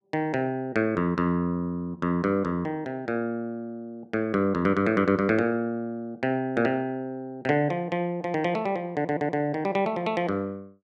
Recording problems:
audio stuttering; at 9 s

